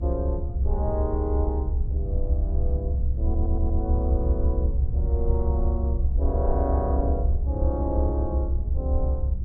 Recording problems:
low-frequency rumble; below 70 Hz, SNR -6 dB
audio stuttering; at 3 s

